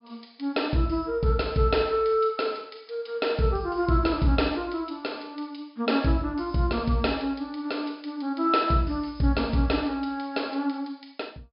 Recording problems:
low-pass filter; nothing above 5.5 kHz

